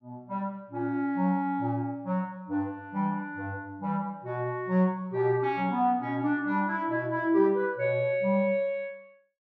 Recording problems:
none

